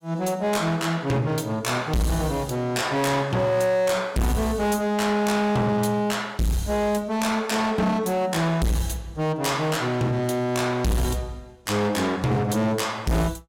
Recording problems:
distorted audio; hard clipping, signal-to-distortion ratio 6 dB

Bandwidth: 16.5 kHz